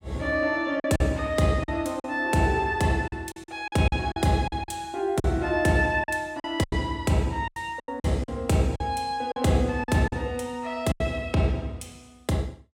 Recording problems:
lost packets; 9% of the sound replaced, filled with silence

